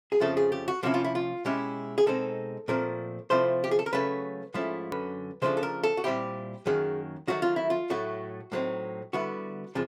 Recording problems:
edit click; at 5 s

